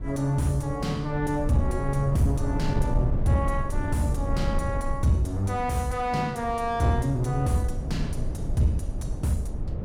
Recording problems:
distortion; soft clipping, signal-to-distortion ratio 11 dB
rumble; below 110 Hz, SNR 5 dB

